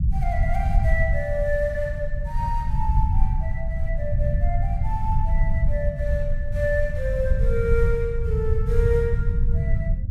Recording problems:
rumble; below 80 Hz, SNR -4 dB

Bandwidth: 16 kHz